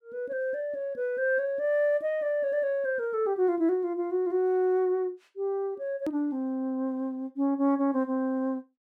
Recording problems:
edit click; at 6 s

